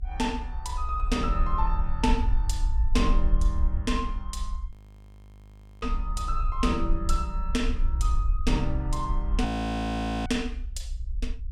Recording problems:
low-frequency rumble; below 58 Hz, SNR -1 dB
audio freezing; at 4.5 s for 1 s and at 9.5 s for 1 s

